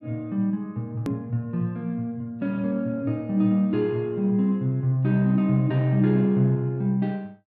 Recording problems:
edit click; at 1 s

